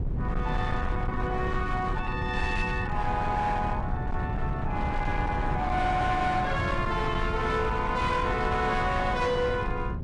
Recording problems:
lossy compression; AAC, log-spectral distance 2 dB, nothing above 10.4 kHz
distorted audio; hard clipping, signal-to-distortion ratio 11 dB
rumble; below 170 Hz, SNR 4 dB

